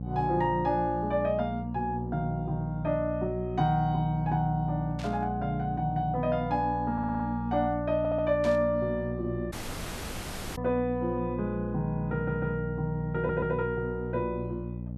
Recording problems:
mains hum; 60 Hz, harmonics up to 540 Hz, SNR 7 dB
burst of static; at 5 s and at 8.5 s; peak -9 dB vs average level
stutter; 4 times, first at 7 s
audio cutting out; at 9.5 s for 1 s

